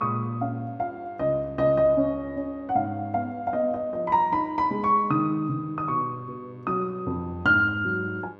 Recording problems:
mains hum; 50 Hz, harmonics up to 2.7 kHz, SNR 25 dB

